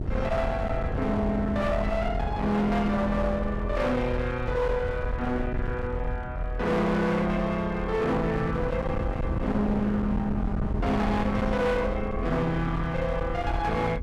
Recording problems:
distorted audio; hard clipping, uneven, signal-to-distortion ratio 6 dB
low-frequency rumble; below 100 Hz, strongest tone 44 Hz, SNR 7 dB
wind on the microphone; below 240 Hz, SNR 8 dB

